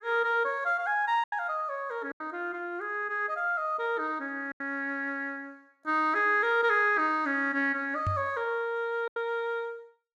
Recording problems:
packet loss; 3% of the sound replaced, filled with silence
microphone bump; at 8 s; peak 0 dB vs average level

